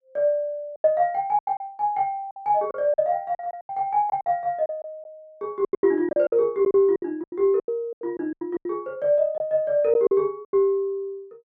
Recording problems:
packet loss; 13% of the sound replaced, filled with silence

